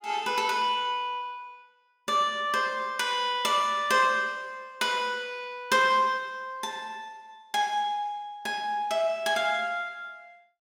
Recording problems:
none

